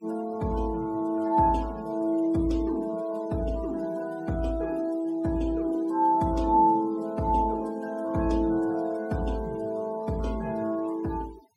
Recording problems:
noise reduction artefacts; signal-to-artefact ratio 23 dB

